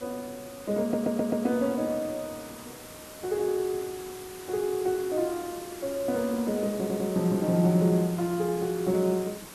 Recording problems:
background hiss; slope -3 dB per octave, SNR 15 dB
audio stuttering; at 1 s and at 7 s

